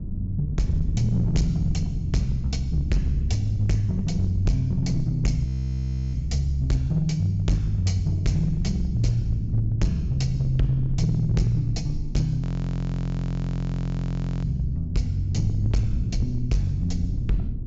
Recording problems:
treble cut off; nothing above 7.6 kHz
distortion; hard clipping, signal-to-distortion ratio 11 dB
hum; 60 Hz, harmonics up to 960 Hz, SNR 29 dB
rumble; below 130 Hz, SNR 7 dB
audio freezing; at 5.5 s for 0.5 s and at 12 s for 2 s

